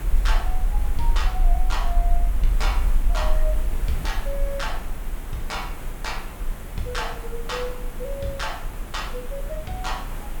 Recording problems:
background hiss; slope -6 dB per octave, SNR 6 dB
rumble; below 42 Hz, strongest tone 28 Hz, SNR -3 dB

